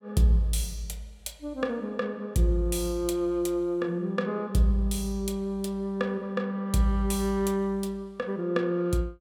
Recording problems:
none

